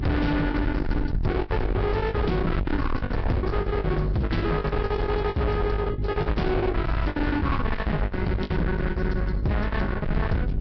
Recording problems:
codec artefacts; Vorbis, log-spectral distance 2 dB, nothing above 5.3 kHz
distorted audio; hard clipping, signal-to-distortion ratio 6 dB
electrical hum; 50 Hz, harmonics up to 400 Hz, SNR 3 dB
low-frequency rumble; below 140 Hz, SNR 4 dB
lost packets; 16% of the sound replaced, filled with the last packet

